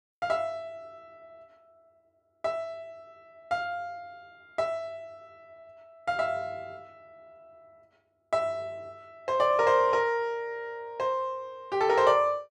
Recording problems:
none

